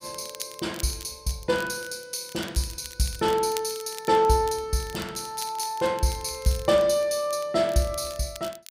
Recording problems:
crackle; vinyl, SNR 16 dB

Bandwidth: 15.5 kHz